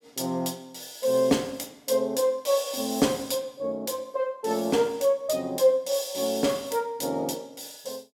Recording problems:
none

